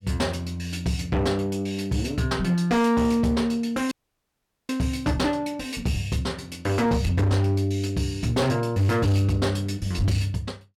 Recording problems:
distortion; hard clipping, signal-to-distortion ratio 10 dB
dropout; at 4 s for 1 s

